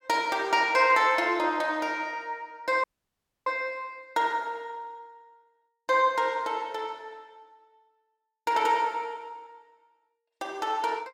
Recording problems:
dropout; at 3 s for 0.5 s

